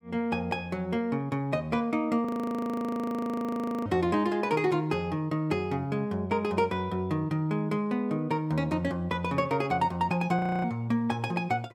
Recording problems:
frozen audio; at 2.5 s for 1.5 s and at 10 s

